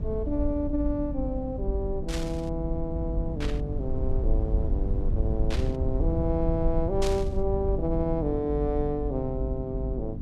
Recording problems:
mains hum; 50 Hz, harmonics up to 300 Hz, SNR 8 dB
rumble; below 74 Hz, SNR 1 dB
static burst; 4 times, first at 2 s; peak -1 dB vs average level

